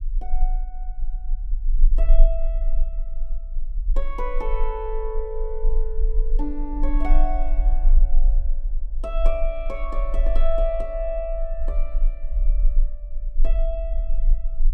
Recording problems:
low-frequency rumble; below 34 Hz, strongest tone 22 Hz, SNR -6 dB

